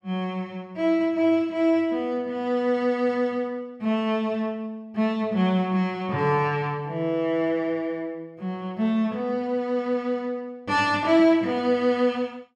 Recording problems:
none

